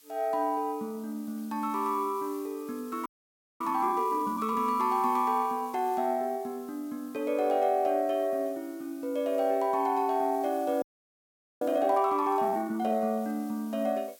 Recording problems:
hiss; slope +2 dB per octave, SNR 23 dB
audio freezing; at 3 s for 0.5 s and at 11 s for 1 s

